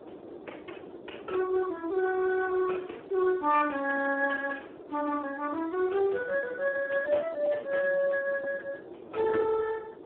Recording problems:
phone line; 300 Hz to 2.5 kHz, Speex
wind noise; below 540 Hz, SNR 15 dB

